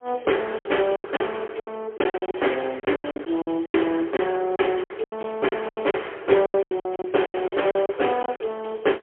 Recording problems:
telephone audio; 300 Hz to 3.3 kHz, AMR-NB, then MP3
packet loss; 18% of the sound replaced, filled with silence

